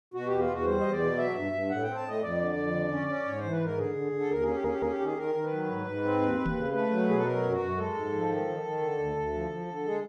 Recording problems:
stutter; at 4.5 s
knock on the microphone; at 6.5 s; peak 0 dB vs average level

